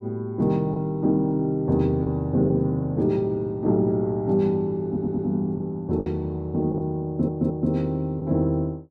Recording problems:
lost packets; 2% of the sound replaced, filled with the last packet
audio stuttering; at 5 s and at 7 s

